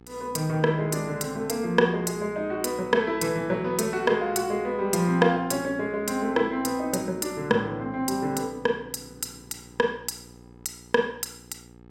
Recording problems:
hum; 60 Hz, harmonics up to 1.7 kHz, SNR 23 dB

